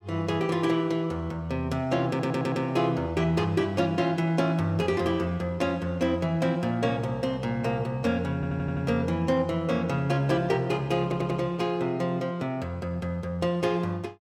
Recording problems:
audio stuttering; at 2 s, at 8.5 s and at 11 s

